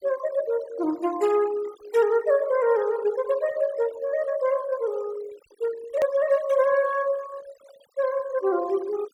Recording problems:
noise reduction artefacts; signal-to-artefact ratio 20 dB
click at an edit; at 6 s

